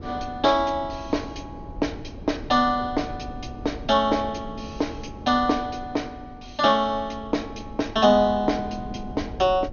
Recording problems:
treble cut off; nothing above 6.7 kHz
wind on the microphone; below 270 Hz, SNR 16 dB

